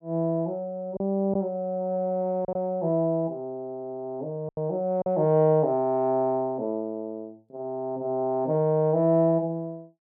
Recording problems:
lost packets; 2% of the sound replaced, filled with silence

